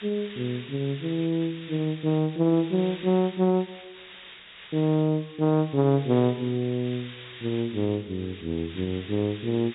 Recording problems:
treble cut off; nothing above 4 kHz
hiss; SNR 17 dB

